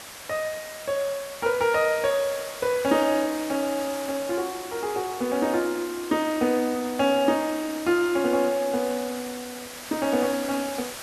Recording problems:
background hiss; SNR 12 dB

